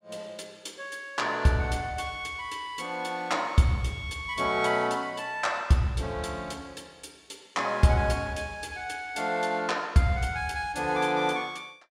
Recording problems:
none

